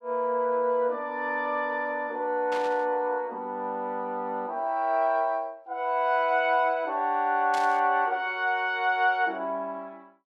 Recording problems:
static burst; at 2.5 s and at 7.5 s; peak -8 dB vs average level

